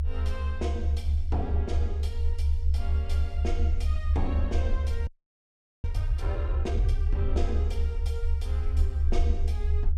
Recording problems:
rumble; below 74 Hz, SNR -10 dB
frozen audio; at 5 s for 1 s

